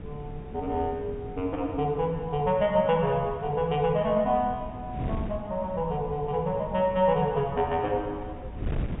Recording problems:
low-pass filter; nothing above 4 kHz
wind noise; below 210 Hz, SNR 12 dB

